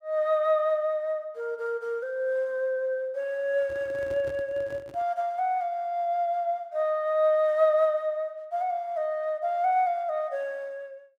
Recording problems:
microphone handling noise; from 3.5 to 5 s; peak -11 dB vs average level

